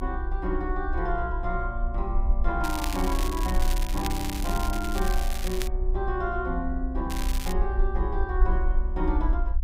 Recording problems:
low-frequency rumble; below 58 Hz, strongest tone 30 Hz, SNR -1 dB
crackle; from 2.5 to 5.5 s and at 7 s; loose cable, SNR 6 dB

